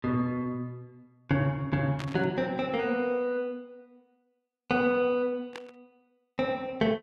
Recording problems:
static burst; at 2 s and at 5.5 s; peak -6 dB vs average level

